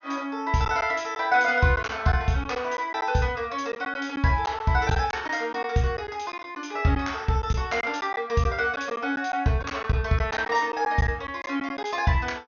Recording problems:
low-pass filter; nothing above 6.6 kHz
packet loss; 5% of the sound replaced, filled with silence

